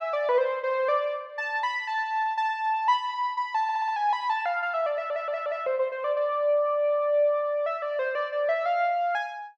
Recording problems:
stutter; at 3.5 s and at 5 s

